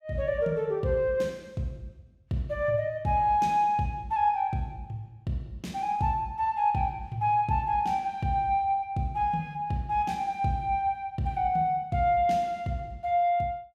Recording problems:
none

